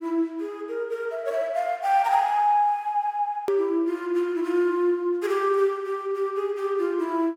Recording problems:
hard cut with a click; at 3.5 s

